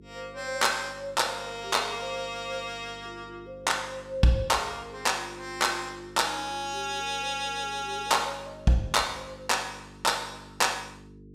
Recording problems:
electrical hum; 50 Hz, harmonics up to 450 Hz, SNR 21 dB

